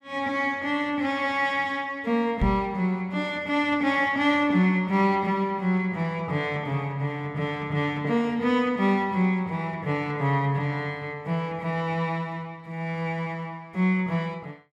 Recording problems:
microphone bump; at 2.5 s; peak +2 dB vs average level

